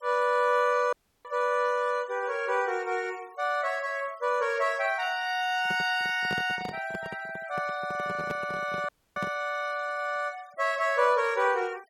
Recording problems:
noise reduction artefacts; signal-to-artefact ratio 25 dB
audio cutting out; at 1 s and at 9 s
microphone handling noise; from 5.5 to 9.5 s; peak -4 dB vs average level

